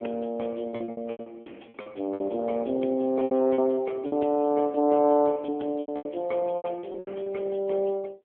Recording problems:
phone line; 190 Hz to 3.3 kHz, AMR-NB
lost packets; 15% of the sound replaced, filled with repeated pitch periods

